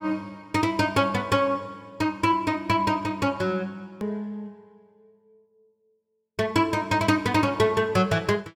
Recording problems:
edit click; at 4 s

